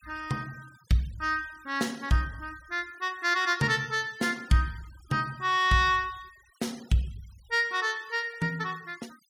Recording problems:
denoising artefacts; signal-to-artefact ratio 25 dB

